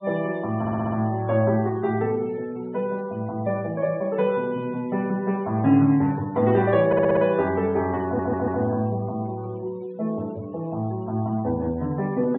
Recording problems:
treble cut off; nothing above 4 kHz
noise reduction artefacts; signal-to-artefact ratio 26 dB
stutter; at 0.5 s, at 7 s and at 8 s

